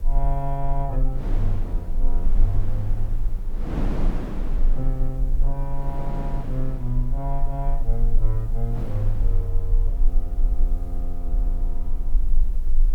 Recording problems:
hiss; slope +1 dB per octave, SNR 28 dB
rumble; below 34 Hz, strongest tone 20 Hz, SNR -4 dB
wind on the microphone; below 360 Hz, SNR 6 dB

